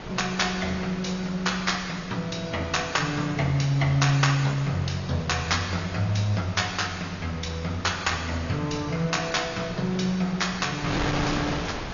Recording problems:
treble missing; nothing above 6.9 kHz
lossy compression; AAC, log-spectral distance 3 dB
hiss; SNR 19 dB
wind on the microphone; below 2.1 kHz, SNR 11 dB

